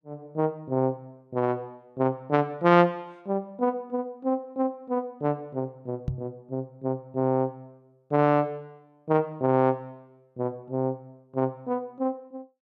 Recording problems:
microphone thump; at 6 s; peak +2 dB vs average level

